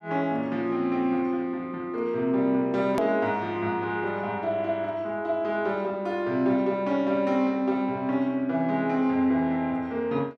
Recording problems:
edit click; at 3 s

